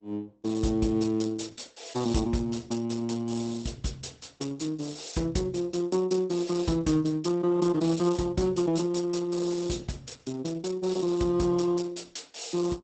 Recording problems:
lossy compression; Opus, log-spectral distance 6 dB, nothing above 8 kHz

